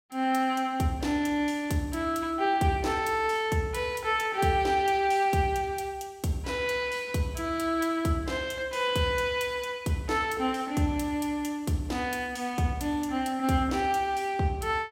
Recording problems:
none

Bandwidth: 16 kHz